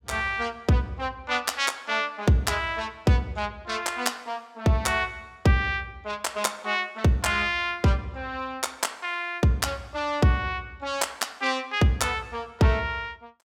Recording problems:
none

